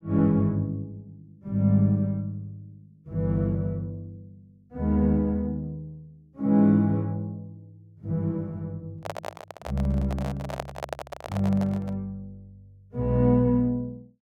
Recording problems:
microphone handling noise; from 9 to 12 s; peak -2 dB vs average level

